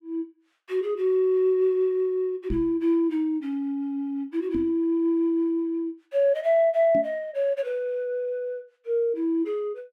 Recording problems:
knock on the microphone; at 2.5 s, at 4.5 s and at 7 s; peak -2 dB vs average level

